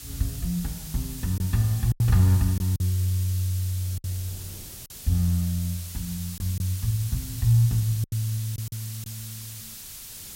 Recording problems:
background hiss; slope +4 dB per octave, SNR 12 dB
wind noise; below 230 Hz, SNR 27 dB
packet loss; 5% of the sound replaced, filled with silence

